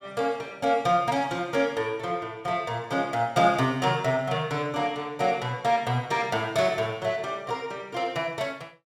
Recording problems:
none

